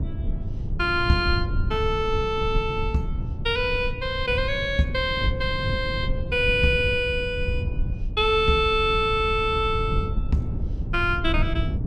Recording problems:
low-frequency rumble; below 110 Hz, SNR 6 dB

